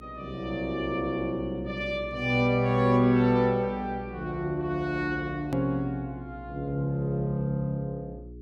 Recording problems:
mains hum; 60 Hz, harmonics up to 420 Hz, SNR 17 dB
hard cut with a click; at 5.5 s

